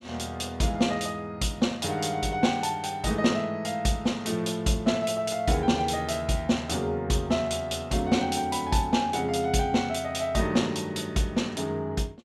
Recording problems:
none

